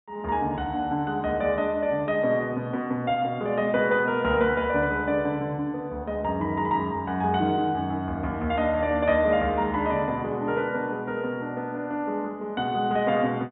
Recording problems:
low-pass filter; nothing above 3.7 kHz

